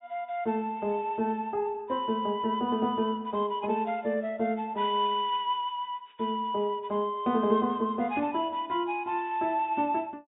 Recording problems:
treble missing; nothing above 4 kHz

